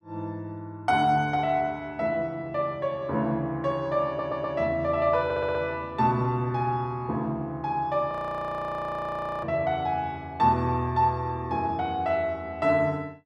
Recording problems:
stutter; at 4 s and at 5 s
audio freezing; at 8 s for 1.5 s

